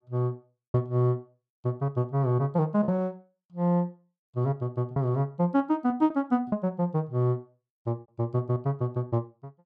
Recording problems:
packet loss; 6% of the sound replaced, filled with repeated pitch periods

